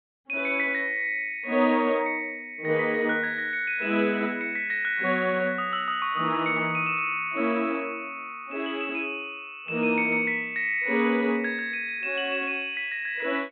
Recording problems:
low-pass filter; nothing above 4 kHz

